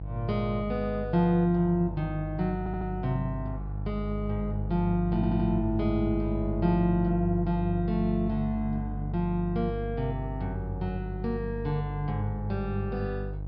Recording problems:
low-pass filter; nothing above 5.5 kHz
hum; 50 Hz, harmonics up to 500 Hz, SNR 6 dB
audio stuttering; at 2.5 s and at 5 s

